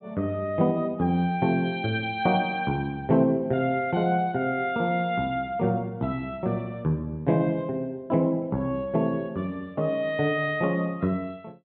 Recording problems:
low-pass filter; nothing above 4 kHz

